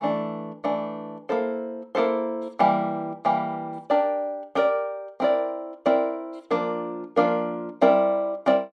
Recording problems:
none

